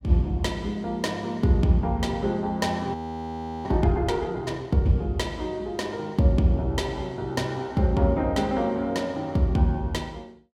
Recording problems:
audio freezing; at 3 s for 0.5 s

